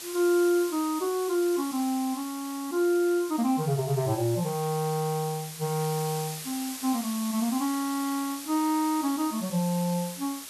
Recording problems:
hiss; slope +1 dB per octave, SNR 10 dB

